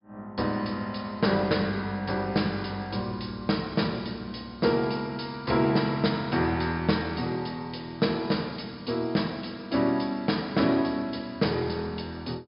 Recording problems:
low-pass filter; nothing above 5.5 kHz

